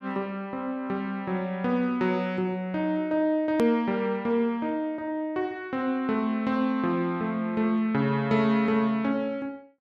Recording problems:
hard cut with a click; at 3.5 s

